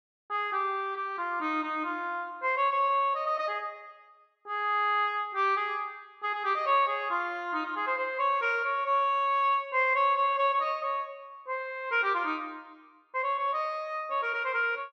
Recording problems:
none

